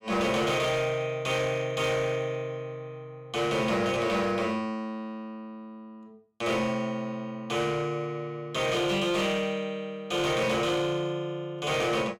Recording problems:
distorted audio; hard clipping, uneven, signal-to-distortion ratio 12 dB

